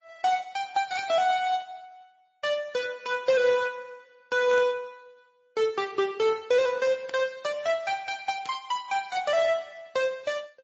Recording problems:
lossy compression; Speex, then MP3, log-spectral distance 4 dB, nothing above 7.3 kHz
burst of static; 4 times, first at 1 s; peak -9 dB vs average level

